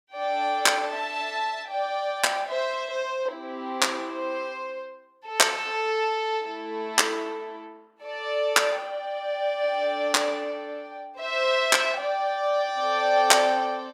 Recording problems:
none

